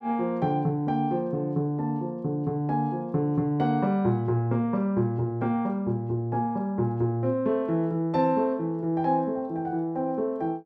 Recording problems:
none

